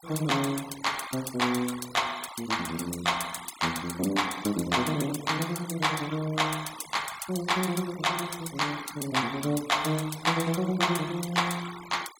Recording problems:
denoising artefacts; signal-to-artefact ratio 14 dB

